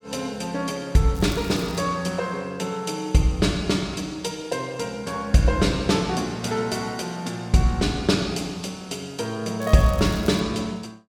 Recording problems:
crackling; at 1 s and at 9.5 s; loose cable, SNR 19 dB

